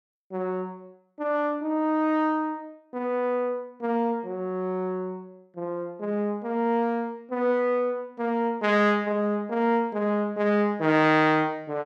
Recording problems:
none

